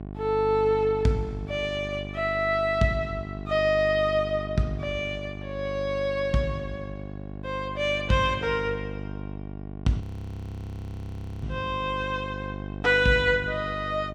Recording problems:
hum; 50 Hz, harmonics up to 1.1 kHz, SNR 11 dB
frozen audio; at 10 s for 1.5 s

